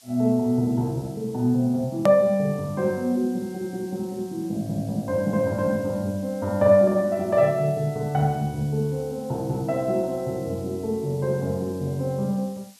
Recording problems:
hiss; slope +3 dB per octave, SNR 25 dB
edit click; at 2 s

